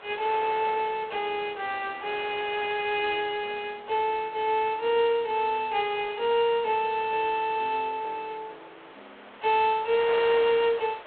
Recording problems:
phone line; 340 Hz to 3.7 kHz, G.726
wind on the microphone; below 2.4 kHz, SNR 18 dB

